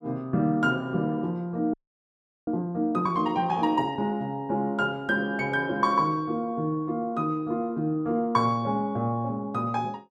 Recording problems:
audio freezing; at 1.5 s for 0.5 s

